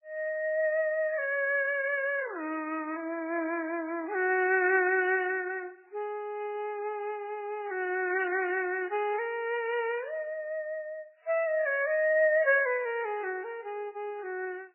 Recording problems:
lossy compression; MP3, then MP3, log-spectral distance 2 dB, nothing above 2.5 kHz

